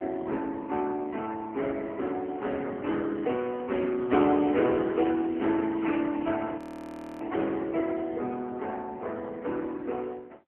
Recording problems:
telephone audio; 220 Hz to 3.2 kHz, AMR-NB
audio freezing; at 6.5 s for 0.5 s

